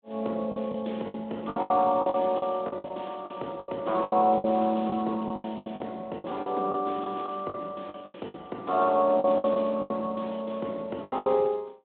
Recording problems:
telephone audio; 220 Hz to 3.7 kHz, Speex
packet loss; 15% of the sound replaced, filled with the last packet

